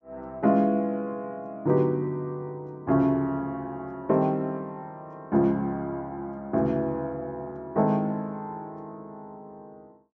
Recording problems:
treble cut off; nothing above 8 kHz

